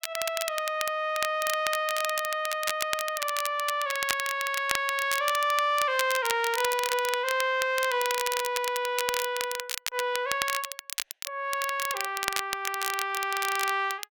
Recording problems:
crackling; vinyl, SNR 5 dB

